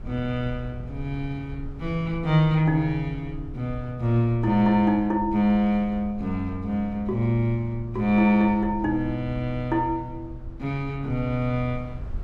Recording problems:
rumble; below 88 Hz, SNR 16 dB

